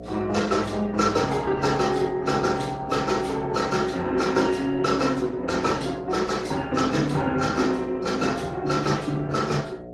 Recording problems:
lossy compression; AAC, then Opus, log-spectral distance 4 dB
electrical hum; 60 Hz, harmonics up to 720 Hz, SNR 14 dB

